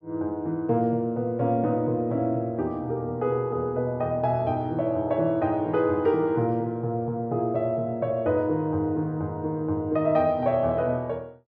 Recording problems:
none

